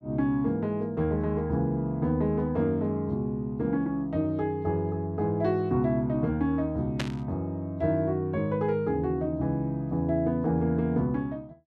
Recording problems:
burst of static; at 7 s; peak -1 dB vs average level

